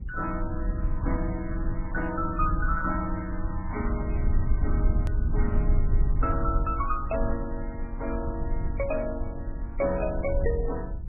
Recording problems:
lossy codec; MP2, then MP3, log-spectral distance 2 dB, nothing above 2.5 kHz
background hiss; SNR 44 dB
low-frequency rumble; below 72 Hz, SNR -1 dB
click at an edit; at 5 s

